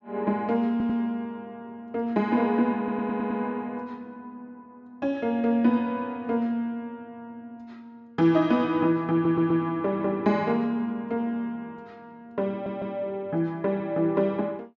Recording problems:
low-pass filter; nothing above 8 kHz
audio stuttering; 4 times, first at 0.5 s

